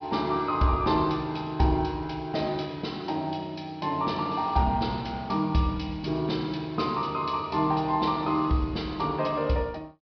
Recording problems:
treble cut off; nothing above 5.5 kHz

